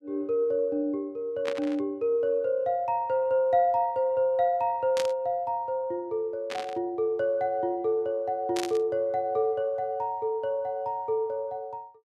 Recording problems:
static burst; 4 times, first at 1.5 s; peak -2 dB vs average level

